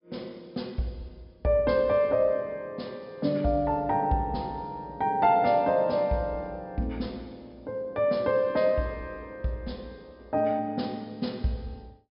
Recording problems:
low-pass filter; nothing above 5.5 kHz

